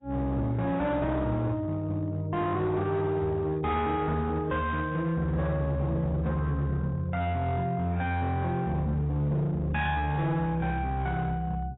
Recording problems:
codec artefacts; AAC, then AAC, log-spectral distance 2 dB, nothing above 3.7 kHz
distorted audio; hard clipping, signal-to-distortion ratio 12 dB

